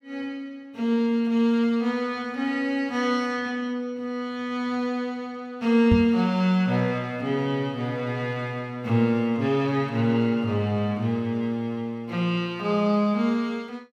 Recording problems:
microphone bump; at 6 s; peak +6 dB vs average level

